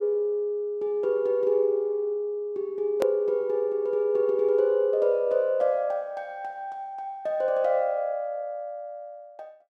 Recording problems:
hard cut with a click; at 3 s

